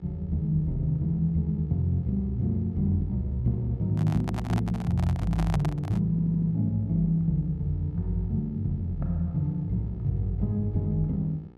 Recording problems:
electrical hum; 60 Hz, harmonics up to 1.7 kHz, SNR 25 dB
handling noise; from 4 to 6 s; peak -2 dB vs average level
audio stuttering; at 6 s

